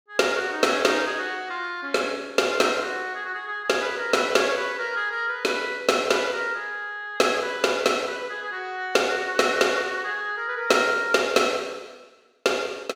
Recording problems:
none

